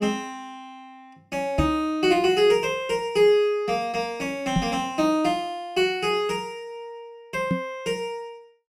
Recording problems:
knock on the microphone; at 1.5 s, at 4.5 s and at 7.5 s; peak +5 dB vs average level

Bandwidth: 16 kHz